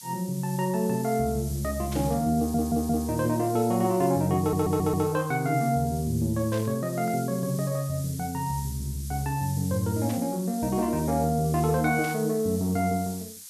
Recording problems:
background hiss; SNR 14 dB
burst of static; 4 times, first at 2 s; peak -10 dB vs average level
audio stuttering; at 2.5 s and at 4.5 s

